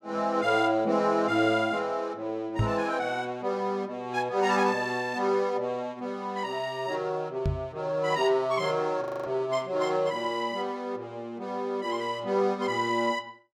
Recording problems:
microphone bump; at 2.5 s and at 7.5 s; peak +5 dB vs average level
frozen audio; at 9 s

